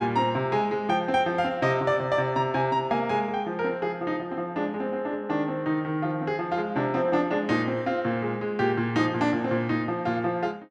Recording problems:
none

